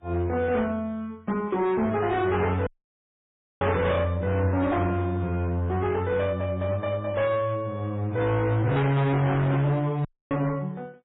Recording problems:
lossy codec; MP3, then AAC, log-spectral distance 2 dB, nothing above 3.6 kHz
distorted audio; hard clipping, signal-to-distortion ratio 8 dB
dropout; at 2.5 s for 1 s and at 10 s

